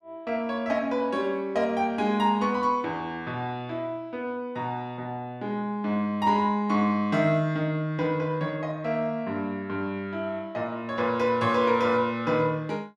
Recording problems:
none

